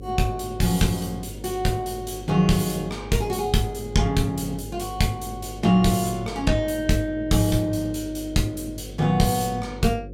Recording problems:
hum; 50 Hz, harmonics up to 550 Hz, SNR 14 dB

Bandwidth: 16 kHz